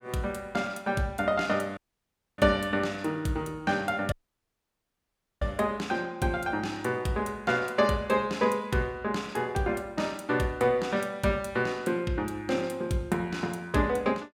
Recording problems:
dropout; at 2 s for 0.5 s and at 4 s for 1.5 s

